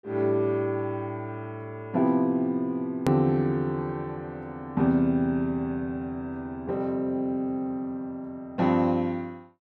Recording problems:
edit click; at 3 s

